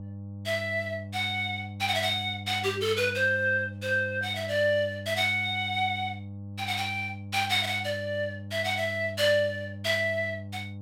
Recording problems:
mains hum; 50 Hz, harmonics up to 800 Hz, SNR 12 dB

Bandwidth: 16 kHz